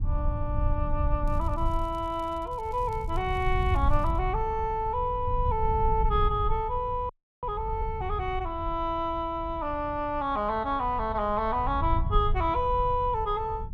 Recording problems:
rumble; below 82 Hz, SNR 5 dB
crackling; from 1.5 to 4 s; loose cable, SNR 30 dB
audio freezing; at 7 s

